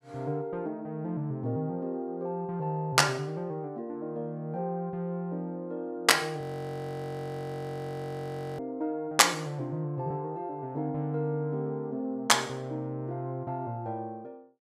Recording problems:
audio freezing; at 6.5 s for 2 s

